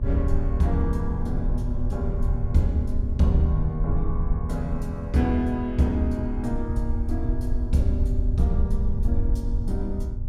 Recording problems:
hum; 60 Hz, harmonics up to 840 Hz, SNR 14 dB
low-frequency rumble; below 72 Hz, SNR 1 dB

